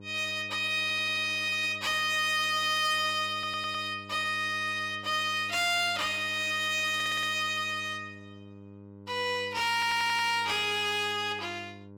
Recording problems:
distortion; hard clipping, uneven, signal-to-distortion ratio 11 dB
hum; 50 Hz, harmonics up to 1.1 kHz, SNR 21 dB
stutter; 4 times, first at 1 s

